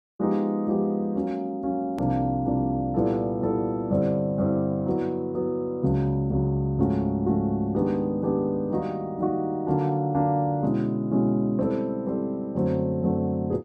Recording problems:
click at an edit; at 2 s

